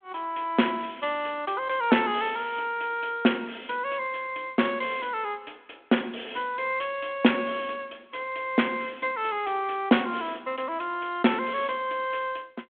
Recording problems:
telephone audio; 190 Hz to 3.4 kHz, G.726

